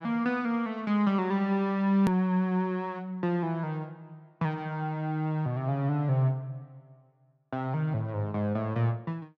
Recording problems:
hard cut with a click; at 2 s

